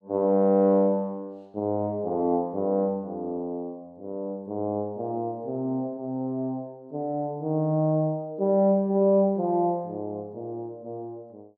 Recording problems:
none

